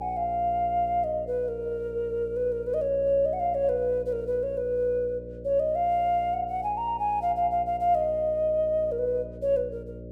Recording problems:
hum; 60 Hz, harmonics up to 600 Hz, SNR 15 dB

